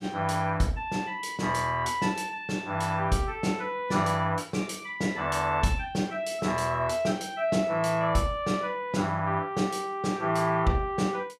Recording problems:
none

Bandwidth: 14.5 kHz